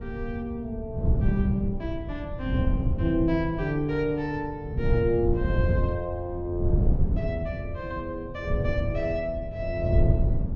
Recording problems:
treble missing; nothing above 8 kHz
wind on the microphone; below 130 Hz, SNR -1 dB

